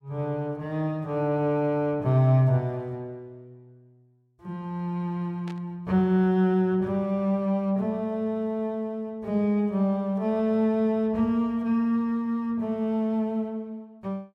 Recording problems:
static burst; at 5.5 s; peak -16 dB vs average level

